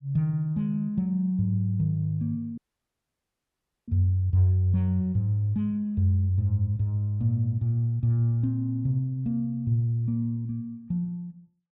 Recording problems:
audio cutting out; at 2.5 s for 1.5 s

